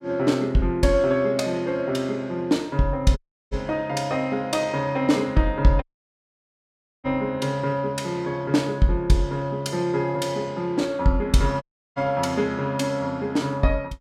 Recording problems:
audio cutting out; at 3 s, at 6 s for 1 s and at 12 s

